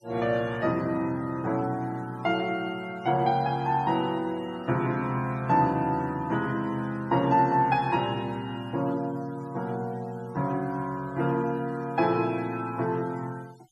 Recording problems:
denoising artefacts; signal-to-artefact ratio 25 dB

